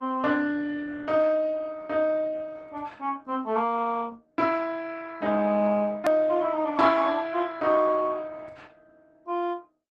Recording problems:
lossy codec; Opus, log-spectral distance 3 dB, nothing above 13.1 kHz
hard cut with a click; at 6 s

